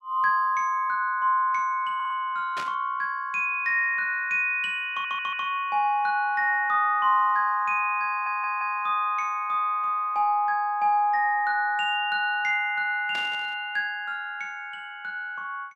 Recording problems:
stutter; at 2 s, at 5 s and at 8 s
static burst; at 2.5 s and at 13 s; peak -7 dB vs average level

